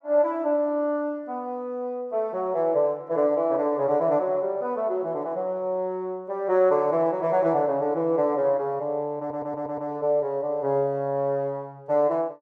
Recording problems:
stutter; at 9 s

